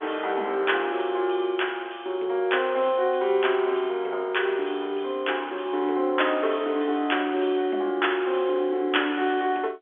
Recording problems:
telephone audio; 260 Hz to 3.5 kHz, G.711

